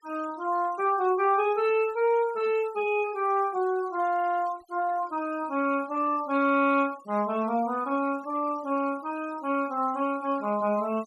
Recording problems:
noise reduction artefacts; signal-to-artefact ratio 23 dB

